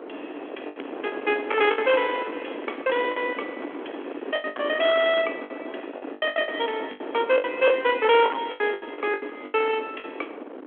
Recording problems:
phone line; 240 Hz to 3.4 kHz, G.726
distorted audio; hard clipping, signal-to-distortion ratio 13 dB
wind on the microphone; below 910 Hz, SNR 11 dB
packet loss; 13% of the sound replaced, filled with the last packet
crackling; from 1 to 5 s and from 7.5 to 9.5 s; loose cable, SNR 29 dB

